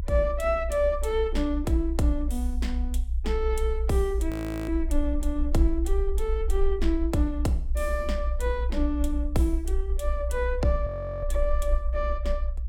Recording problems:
rumble; below 60 Hz, strongest tone 28 Hz, SNR 1 dB
frozen audio; at 4.5 s and at 11 s

